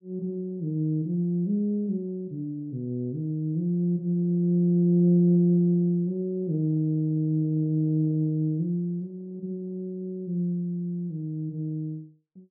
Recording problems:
low-pass filter; nothing above 5.5 kHz

